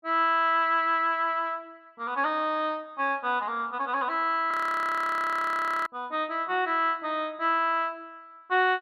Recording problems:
frozen audio; at 4.5 s for 1.5 s

